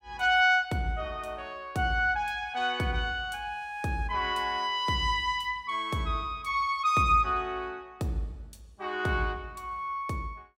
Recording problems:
none

